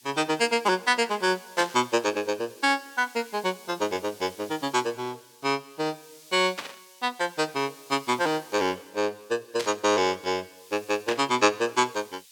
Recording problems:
background hiss; SNR 23 dB
burst of static; 4 times, first at 1.5 s; peak -1 dB vs average level

